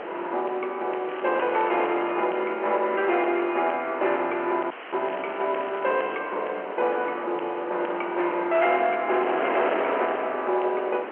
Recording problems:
phone line; 300 Hz to 3.2 kHz, G.711
distorted audio; hard clipping, signal-to-distortion ratio 12 dB
wind on the microphone; below 1.4 kHz, SNR 9 dB
crackle; from 1 to 2 s and from 5 to 6 s; loose cable, SNR 19 dB
dropout; at 4.5 s

